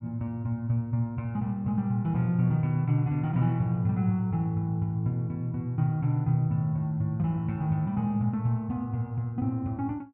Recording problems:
none

